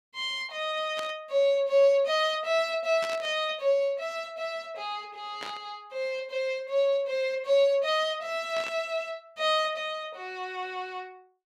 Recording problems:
static burst; 4 times, first at 1 s; peak -6 dB vs average level

